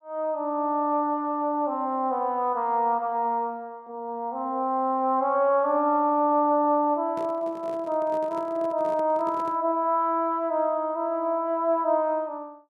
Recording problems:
handling noise; from 7 to 9.5 s; peak -12 dB vs average level

